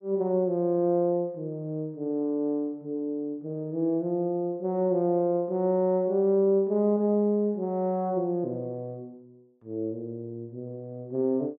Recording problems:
none

